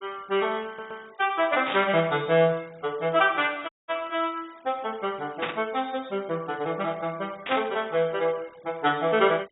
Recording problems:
treble cut off; nothing above 4 kHz
denoising artefacts; signal-to-artefact ratio 27 dB
stutter; at 0.5 s
burst of static; at 1.5 s, at 5.5 s and at 7.5 s; peak +1 dB vs average level
dropout; at 3.5 s

